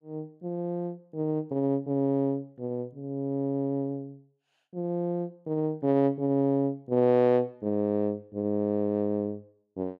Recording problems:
none

